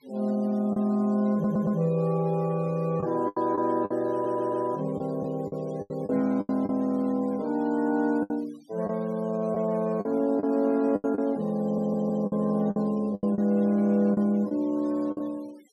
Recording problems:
denoising artefacts; signal-to-artefact ratio 28 dB
packet loss; 8% of the sound replaced, filled with the last packet
stutter; at 1.5 s, at 4 s and at 12 s

